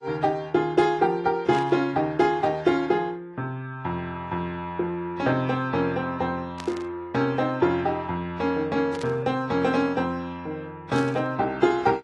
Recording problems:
lossy compression; AAC, log-spectral distance 2 dB, nothing above 11 kHz
static burst; 4 times, first at 1.5 s; peak -8 dB vs average level

